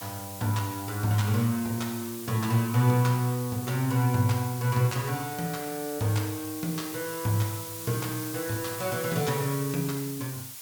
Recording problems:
background hiss; slope +2 dB per octave, SNR 10 dB

